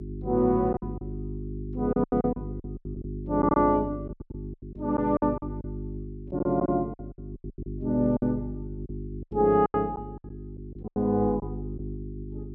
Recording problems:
hum; 50 Hz, harmonics up to 400 Hz, SNR 11 dB
packet loss; 12% of the sound replaced, filled with silence

